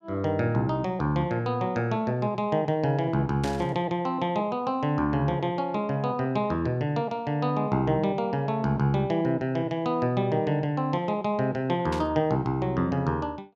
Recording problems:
burst of static; at 3.5 s and at 12 s; peak -7 dB vs average level

